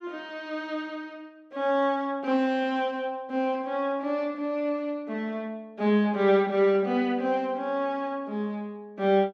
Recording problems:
none

